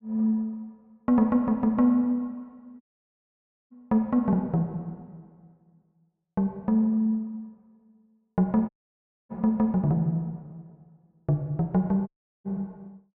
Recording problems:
audio cutting out; at 3 s for 1 s, at 8.5 s for 0.5 s and at 12 s

